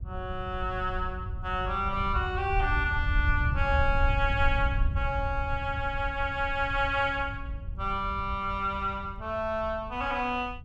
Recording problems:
wind noise; below 84 Hz, SNR 4 dB

